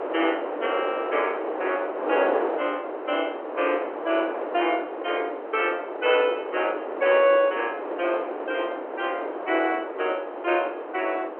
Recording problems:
phone line; 260 Hz to 3.2 kHz, G.711
wind noise; below 850 Hz, SNR 5 dB

